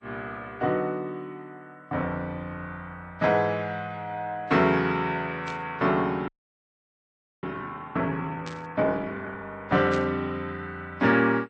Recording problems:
lossy compression; MP2, then AAC, log-spectral distance 2 dB
burst of static; at 5.5 s, at 8.5 s and at 10 s; peak -8 dB vs average level
frozen audio; at 6.5 s for 1 s

